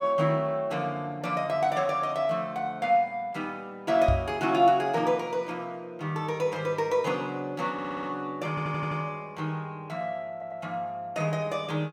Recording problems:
microphone thump; at 4 s; peak +5 dB vs average level
stutter; at 7.5 s, at 8.5 s and at 10 s

